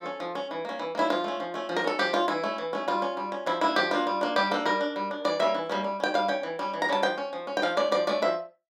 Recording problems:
none

